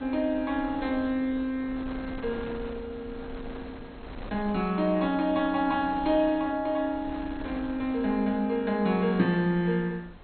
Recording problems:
lossy compression; MP2, log-spectral distance 2 dB, nothing above 3.8 kHz
wind on the microphone; below 670 Hz, SNR 16 dB

